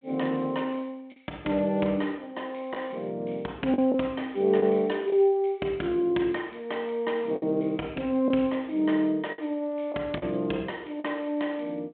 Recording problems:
telephone audio; 220 Hz to 3.5 kHz, G.726
lost packets; 3% of the sound replaced, filled with the last packet

